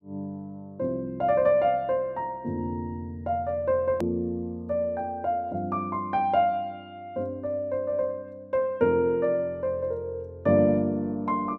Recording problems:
click at an edit; at 4 s

